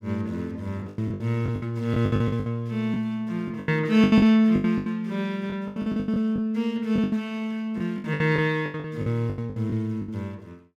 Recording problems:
lost packets; 17% of the sound replaced, filled with the last packet

